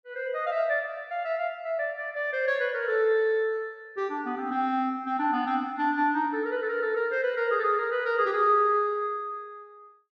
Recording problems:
none

